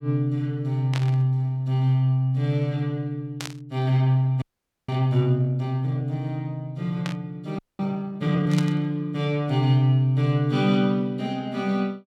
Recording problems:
burst of static; 4 times, first at 1 s; peak -5 dB vs average level
audio freezing; at 4.5 s and at 7.5 s

